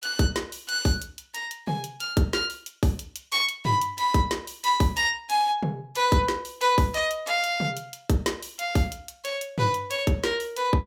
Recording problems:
none

